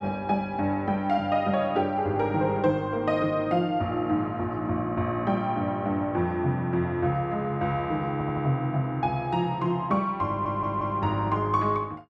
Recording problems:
stutter; at 8 s and at 10 s

